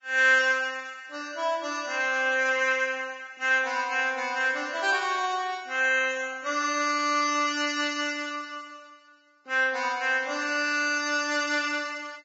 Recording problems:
lossy compression; Vorbis, log-spectral distance 3 dB, nothing above 6.2 kHz

